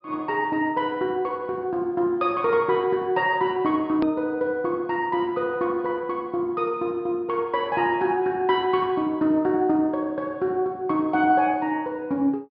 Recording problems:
low-pass filter; nothing above 5.5 kHz
click at an edit; at 4 s

